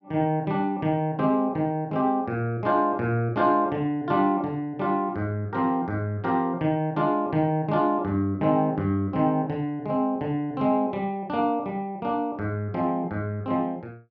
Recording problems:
none

